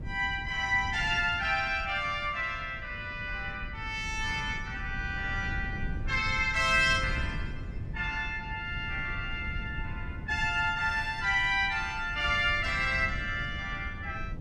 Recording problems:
wind noise; below 140 Hz, SNR 11 dB

